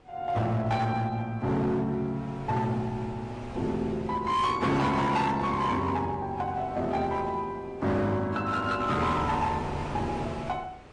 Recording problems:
lossy codec; AAC, then MP3, log-spectral distance 2 dB, nothing above 8.7 kHz
distortion; hard clipping, signal-to-distortion ratio 10 dB
wind on the microphone; below 1.1 kHz, SNR 14 dB

